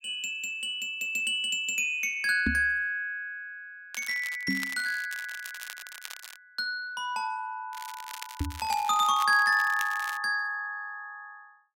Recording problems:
microphone thump; at 2.5 s, at 4.5 s and at 8.5 s; peak +2 dB vs average level
crackling; from 4 to 6.5 s and from 7.5 to 10 s; loose cable, SNR 14 dB

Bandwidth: 16 kHz